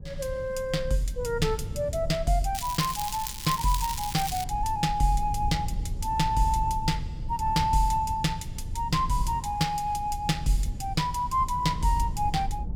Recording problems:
low-frequency rumble; below 92 Hz, SNR 9 dB
crackling; from 2.5 to 4.5 s; loose cable, SNR 7 dB

